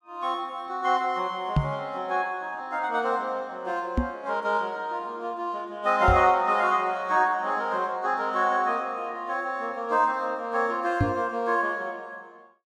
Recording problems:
knock on the microphone; 4 times, first at 1.5 s; peak +7 dB vs average level

